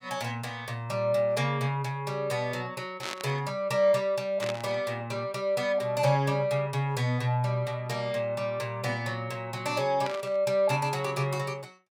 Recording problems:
burst of static; at 3 s, at 4.5 s and at 10 s; peak -2 dB vs average level

